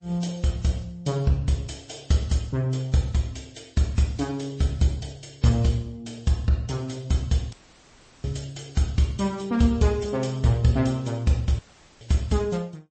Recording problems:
lossy codec; MP3, then MP3, log-spectral distance 4 dB, nothing above 8.2 kHz
dropout; at 7.5 s for 0.5 s and at 12 s

